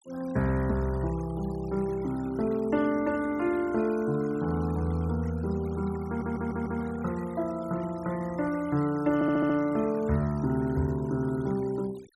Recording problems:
denoising artefacts; signal-to-artefact ratio 22 dB
stutter; at 6 s and at 9 s

